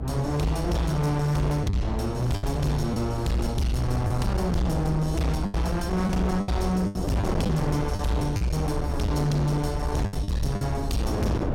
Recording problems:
distortion; hard clipping, signal-to-distortion ratio 8 dB
low-frequency rumble; below 86 Hz, SNR 7 dB
wind on the microphone; below 400 Hz, SNR 9 dB
packet loss; 6% of the sound replaced, filled with the last packet

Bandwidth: 16 kHz